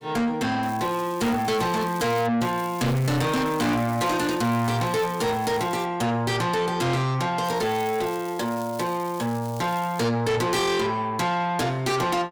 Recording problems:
distorted audio; soft clipping, signal-to-distortion ratio 7 dB
crackling; from 0.5 to 2.5 s, from 2.5 to 6 s and from 7.5 to 10 s; loose cable, SNR 19 dB

